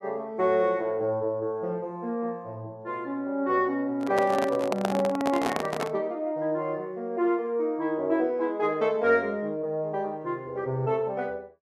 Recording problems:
microphone handling noise; from 4 to 6 s; peak +3 dB vs average level

